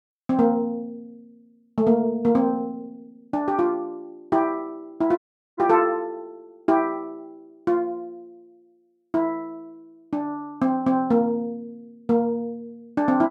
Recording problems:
audio cutting out; at 5 s

